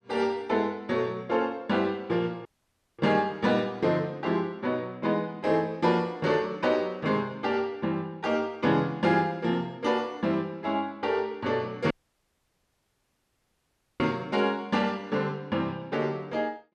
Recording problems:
audio cutting out; at 2.5 s for 0.5 s and at 12 s for 2 s

